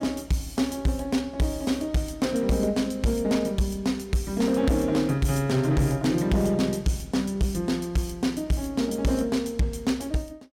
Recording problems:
distortion; hard clipping, signal-to-distortion ratio 11 dB

